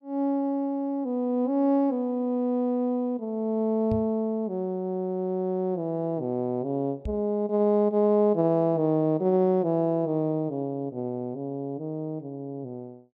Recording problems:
microphone bump; at 4 s and at 7 s; peak -2 dB vs average level

